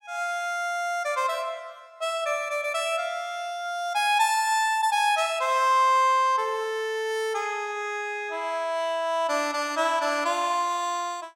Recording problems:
none

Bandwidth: 16 kHz